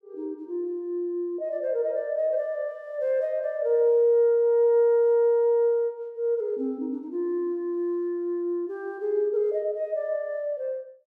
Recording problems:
none

